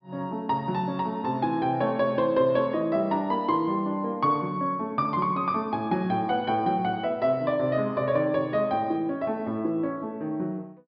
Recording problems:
treble cut off; nothing above 5.5 kHz

